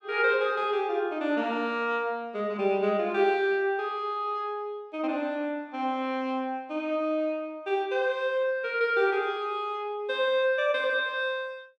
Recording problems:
none

